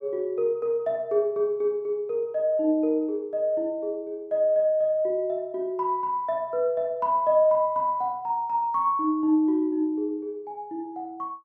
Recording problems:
none

